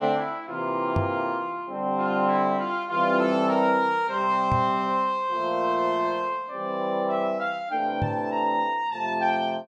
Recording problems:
microphone thump; at 1 s, at 4.5 s and at 8 s; peak +2 dB vs average level

